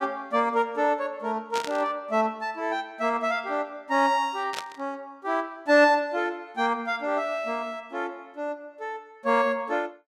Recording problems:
burst of static; at 1.5 s and at 4.5 s; peak -2 dB vs average level

